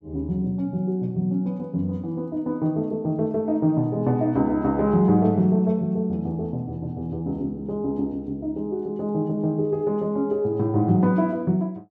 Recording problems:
none

